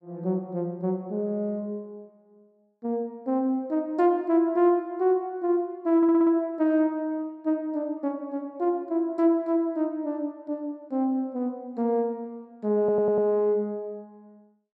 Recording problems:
stutter; at 6 s and at 13 s

